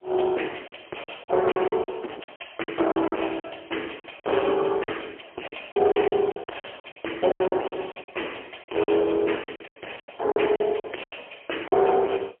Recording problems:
phone line; 280 Hz to 3.1 kHz, AMR-NB, then MP3
distortion; hard clipping, signal-to-distortion ratio 7 dB
lost packets; 14% of the sound replaced, filled with silence

